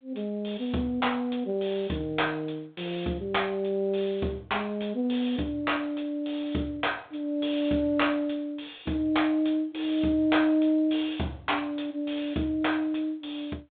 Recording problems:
telephone audio; 130 Hz to 3.7 kHz, G.726

